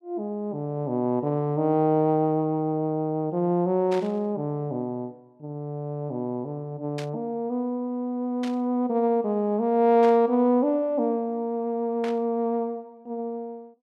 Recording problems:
static burst; 5 times, first at 4 s; peak -8 dB vs average level

